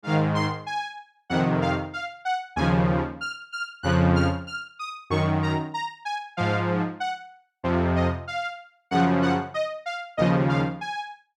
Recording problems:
none

